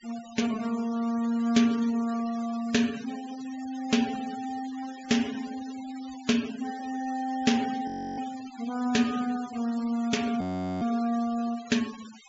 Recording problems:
treble missing; nothing above 8 kHz
noise reduction artefacts; signal-to-artefact ratio 16 dB
frozen audio; at 8 s and at 10 s

